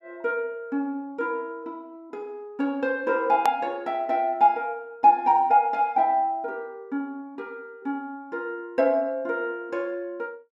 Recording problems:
click at an edit; at 3.5 s

